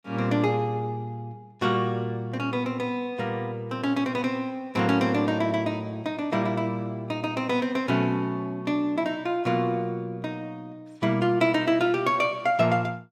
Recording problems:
none

